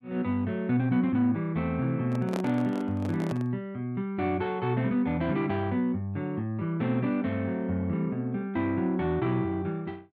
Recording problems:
handling noise; from 2 to 3.5 s; peak -2 dB vs average level

